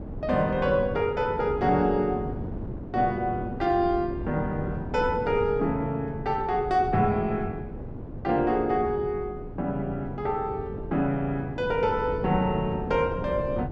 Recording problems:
wind noise; below 310 Hz, SNR 10 dB

